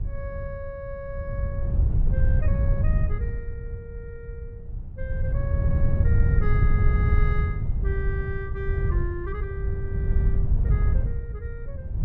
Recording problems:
wind noise; below 96 Hz, SNR -12 dB

